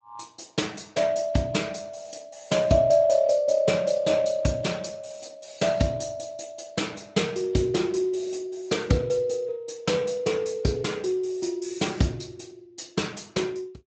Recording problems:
lossy compression; Speex, log-spectral distance 5 dB, nothing above 7.8 kHz

